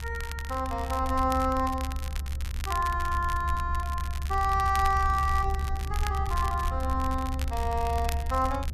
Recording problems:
low-frequency rumble; below 72 Hz, strongest tone 70 Hz, SNR 4 dB
crackle; vinyl, SNR 13 dB

